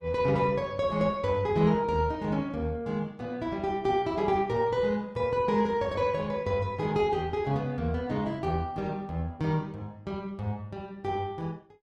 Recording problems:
lossy compression; Opus, log-spectral distance 2 dB

